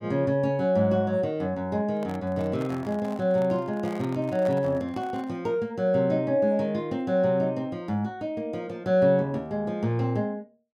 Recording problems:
microphone handling noise; from 2 to 5.5 s; peak -9 dB vs average level

